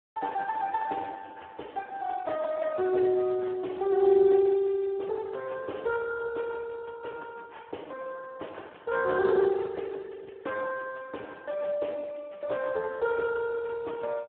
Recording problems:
phone line; 300 Hz to 2.1 kHz, Speex

